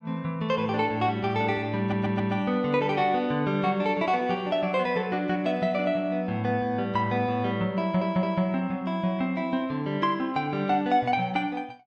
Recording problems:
audio stuttering; at 2 s and at 8 s

